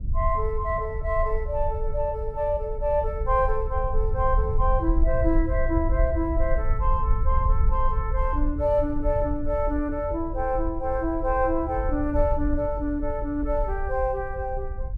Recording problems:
rumble; below 62 Hz, SNR 3 dB

